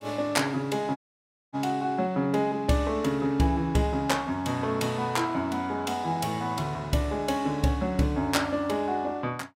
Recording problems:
dropout; at 1 s for 0.5 s

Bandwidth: 16.5 kHz